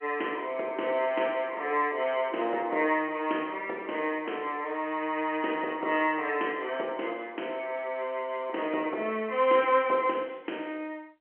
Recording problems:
phone line; 280 Hz to 3.2 kHz, G.711

